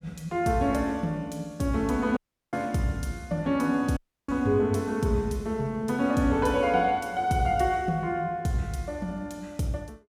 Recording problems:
audio cutting out; at 2 s and at 4 s

